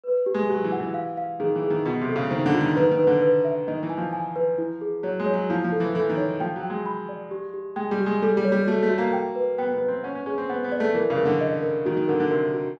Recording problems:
none

